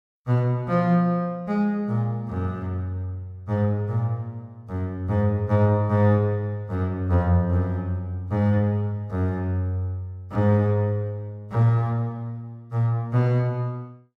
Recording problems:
none

